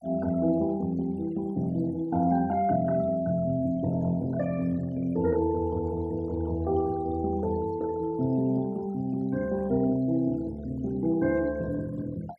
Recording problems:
denoising artefacts; signal-to-artefact ratio 24 dB

